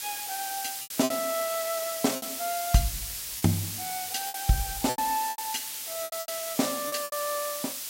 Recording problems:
hiss; slope +3 dB per octave, SNR 3 dB
lost packets; 9% of the sound replaced, filled with repeated pitch periods

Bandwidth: 16 kHz